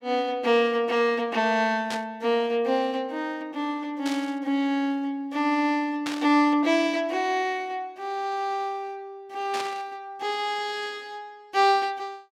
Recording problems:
burst of static; 4 times, first at 2 s; peak -3 dB vs average level

